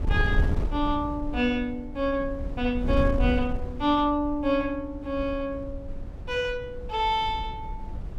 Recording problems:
wind noise; below 92 Hz, SNR 6 dB

